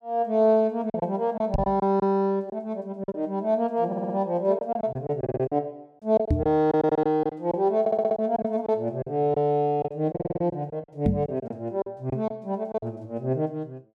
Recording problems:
packet loss; 9% of the sound replaced, filled with silence
knock on the microphone; at 1.5 s, at 6.5 s and at 11 s; peak +6 dB vs average level
stutter; 4 times, first at 4 s

